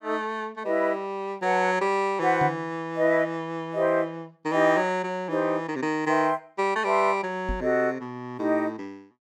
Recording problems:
microphone bump; at 2.5 s and at 7.5 s; peak -3 dB vs average level

